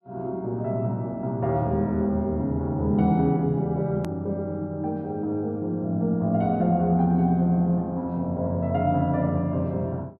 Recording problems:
treble missing; nothing above 5.8 kHz
hard cut with a click; at 4 s

